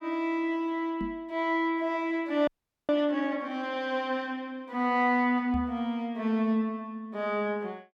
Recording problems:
microphone bump; at 1 s and at 5.5 s; peak -2 dB vs average level
audio freezing; at 2.5 s

